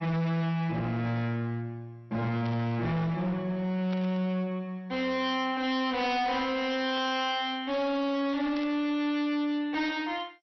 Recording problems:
lossy codec; MP2, log-spectral distance 2 dB, nothing above 5.7 kHz
distorted audio; hard clipping, signal-to-distortion ratio 7 dB
static burst; 4 times, first at 2.5 s; peak -11 dB vs average level

